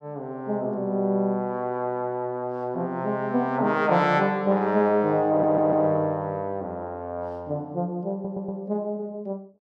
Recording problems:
stutter; at 5.5 s and at 8 s

